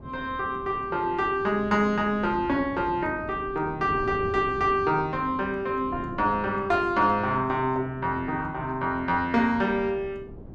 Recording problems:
wind noise; below 310 Hz, SNR 16 dB

